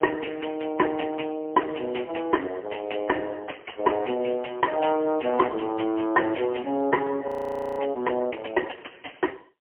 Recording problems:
phone line; 220 Hz to 3 kHz, AMR-NB, then MP3
audio freezing; at 7.5 s for 0.5 s

